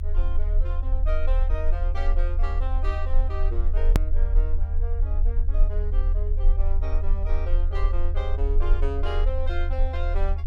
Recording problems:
low-frequency rumble; below 42 Hz, strongest tone 28 Hz, SNR -10 dB
hard cut with a click; at 4 s

